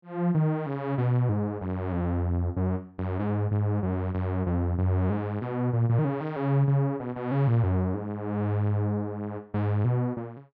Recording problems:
none

